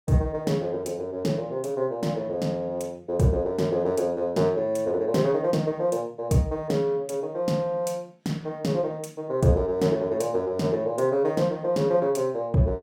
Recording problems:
none

